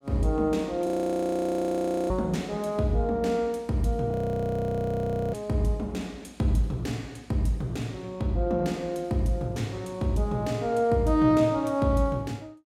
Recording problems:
frozen audio; at 1 s for 1 s and at 4 s for 1 s

